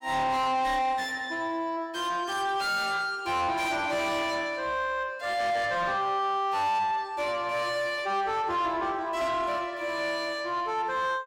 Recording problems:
distortion; soft clipping, signal-to-distortion ratio 7 dB

